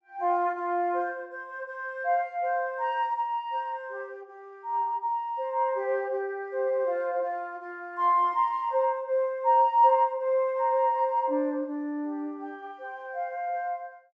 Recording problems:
treble missing; nothing above 8 kHz

